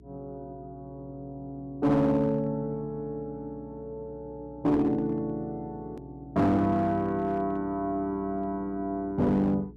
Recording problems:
distortion; hard clipping, uneven, signal-to-distortion ratio 10 dB
hum; 60 Hz, harmonics up to 420 Hz, SNR 22 dB
click at an edit; at 6 s

